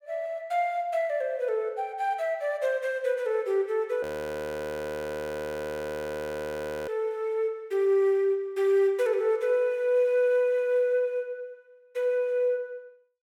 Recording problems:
audio freezing; at 4 s for 3 s

